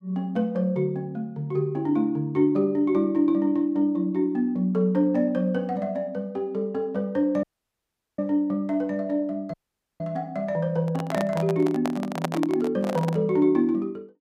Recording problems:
audio cutting out; at 7.5 s for 1 s and at 9.5 s
microphone handling noise; from 11 to 13 s; peak +2 dB vs average level

